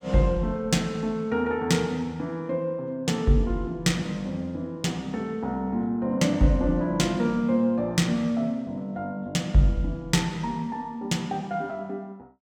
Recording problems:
none

